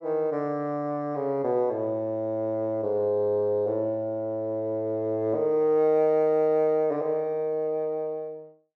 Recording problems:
none

